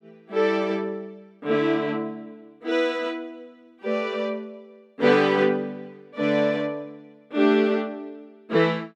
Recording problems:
none

